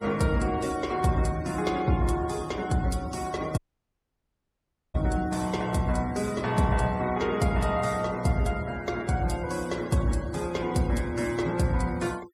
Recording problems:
noise reduction artefacts; signal-to-artefact ratio 19 dB
dropout; at 3.5 s for 1.5 s

